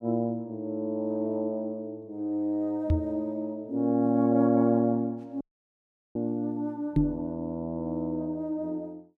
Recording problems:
microphone thump; at 3 s and at 7 s; peak +8 dB vs average level
audio cutting out; at 5.5 s for 0.5 s

